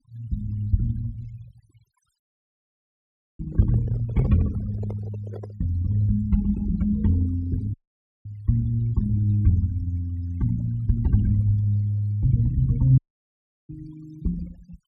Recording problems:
noise reduction artefacts; signal-to-artefact ratio 25 dB
dropout; at 2 s for 1 s, at 7.5 s for 0.5 s and at 13 s for 0.5 s
microphone handling noise; from 3.5 to 5.5 s; peak -7 dB vs average level

